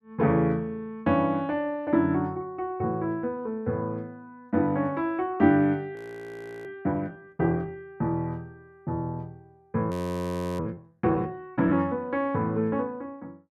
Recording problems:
frozen audio; at 6 s for 0.5 s and at 10 s for 0.5 s

